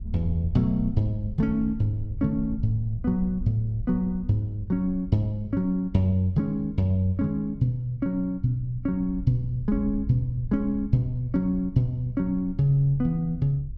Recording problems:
low-frequency rumble; below 76 Hz, SNR 14 dB

